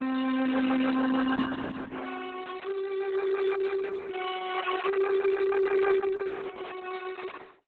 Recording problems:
lossy codec; Opus, then Opus, log-spectral distance 5 dB

